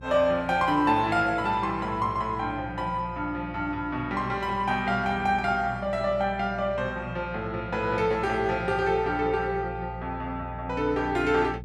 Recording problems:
hum; 60 Hz, harmonics up to 420 Hz, SNR 15 dB

